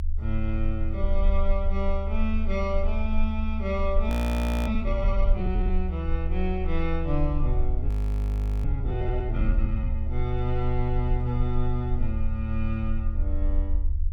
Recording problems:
low-frequency rumble; below 72 Hz, strongest tone 20 Hz, SNR -2 dB
audio freezing; at 4 s for 0.5 s and at 8 s for 1 s

